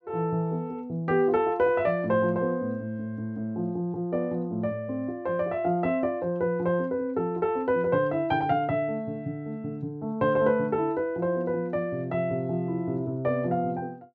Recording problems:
low-pass filter; nothing above 8 kHz

